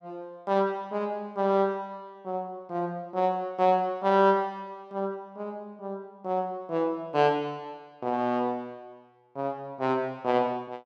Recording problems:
none

